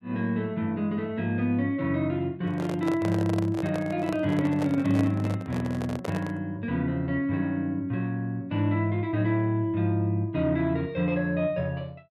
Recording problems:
microphone handling noise; from 2.5 to 6.5 s; peak -3 dB vs average level

